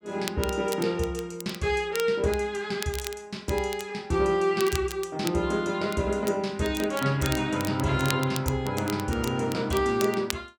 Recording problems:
crackling; vinyl, SNR 12 dB

